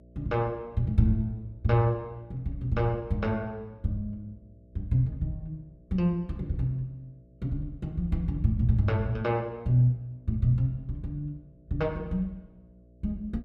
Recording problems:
electrical hum; 60 Hz, harmonics up to 660 Hz, SNR 27 dB

